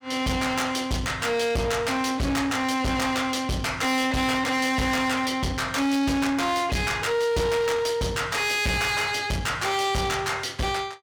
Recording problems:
distortion; soft clipping, signal-to-distortion ratio 7 dB

